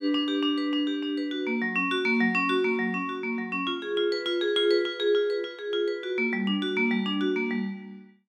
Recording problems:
none

